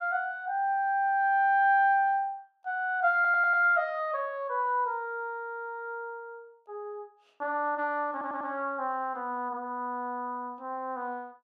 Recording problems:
audio stuttering; at 3 s and at 8 s

